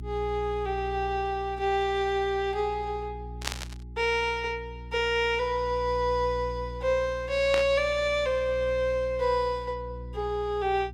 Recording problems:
hum; 60 Hz, harmonics up to 360 Hz, SNR 13 dB
burst of static; at 3.5 s and at 7.5 s; peak +3 dB vs average level

